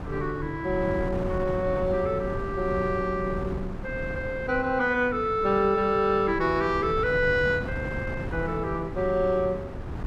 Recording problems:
wind noise; below 330 Hz, SNR 9 dB

